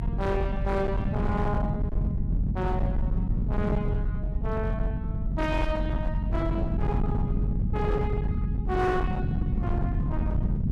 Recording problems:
distorted audio; hard clipping, uneven, signal-to-distortion ratio 10 dB
low-frequency rumble; below 160 Hz, SNR -3 dB

